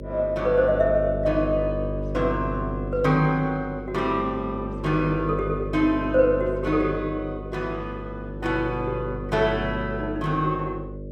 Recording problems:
hum; 50 Hz, harmonics up to 600 Hz, SNR 8 dB

